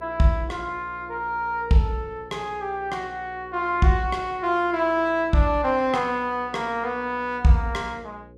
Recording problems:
hum; 60 Hz, harmonics up to 540 Hz, SNR 23 dB

